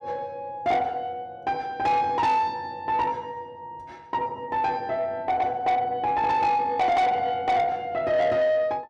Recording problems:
distorted audio; soft clipping, signal-to-distortion ratio 11 dB

